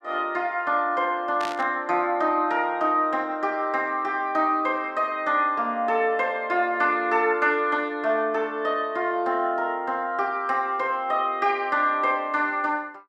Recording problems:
burst of static; at 1.5 s; peak -6 dB vs average level

